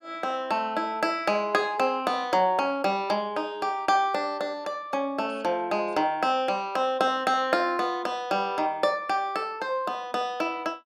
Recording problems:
none

